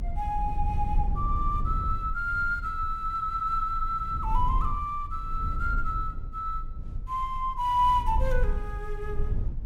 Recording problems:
rumble; below 60 Hz, strongest tone 22 Hz, SNR 5 dB

